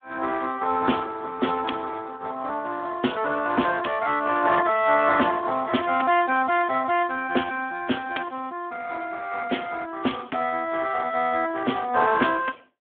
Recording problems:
phone line; 220 Hz to 3.4 kHz, Speex

